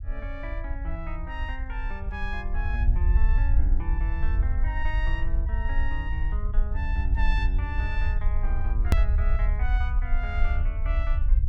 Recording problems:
low-frequency rumble; below 60 Hz, SNR -9 dB
click at an edit; at 9 s

